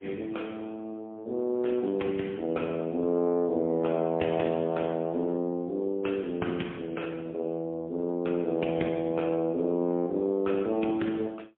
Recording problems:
phone line; 170 Hz to 3.4 kHz, AMR-NB, then MP3

